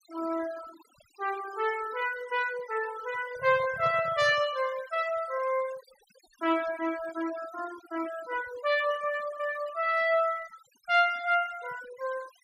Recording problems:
noise reduction artefacts; signal-to-artefact ratio 17 dB
handling noise; from 3 to 4.5 s; peak -8 dB vs average level

